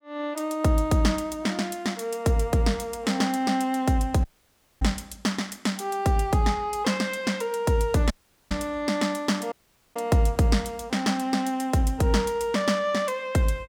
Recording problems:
audio cutting out; at 4 s for 0.5 s, at 8 s and at 9.5 s

